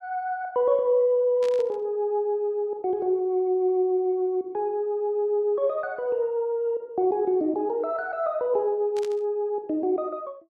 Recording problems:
static burst; at 1.5 s and at 9 s; peak -12 dB vs average level

